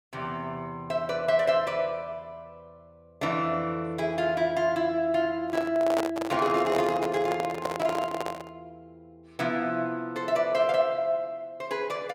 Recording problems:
handling noise; from 5.5 to 8.5 s; peak +2 dB vs average level

